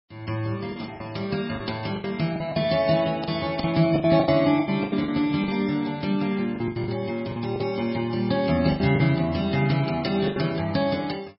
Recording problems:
lossy compression; MP3, log-spectral distance 4 dB, nothing above 5.3 kHz
lost packets; 11% of the sound replaced, filled with the last packet

